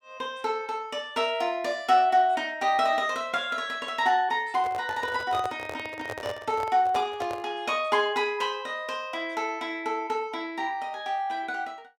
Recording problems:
handling noise; from 4.5 to 7.5 s; peak -4 dB vs average level

